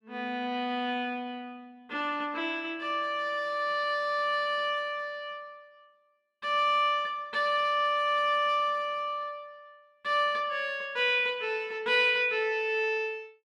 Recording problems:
none

